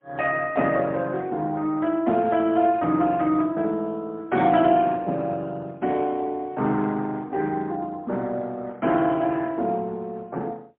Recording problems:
phone line; 110 Hz to 3.4 kHz, AMR-NB, then MP3

